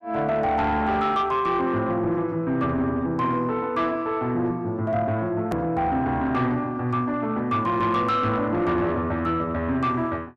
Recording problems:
distorted audio; soft clipping, signal-to-distortion ratio 12 dB
edit click; at 5.5 s

